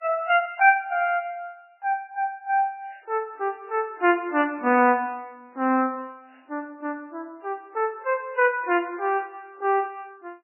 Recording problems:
lossy codec; MP3, log-spectral distance 2 dB, nothing above 2.4 kHz

